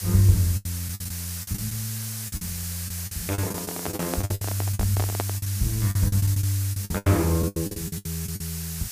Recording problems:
hiss; slope +2 dB per octave, SNR 6 dB
packet loss; 16% of the sound replaced, filled with the last packet
microphone handling noise; from 3.5 to 5.5 s; peak +1 dB vs average level

